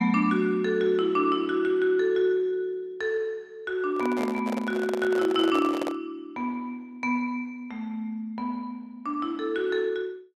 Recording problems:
handling noise; from 4 to 6 s; peak -1 dB vs average level

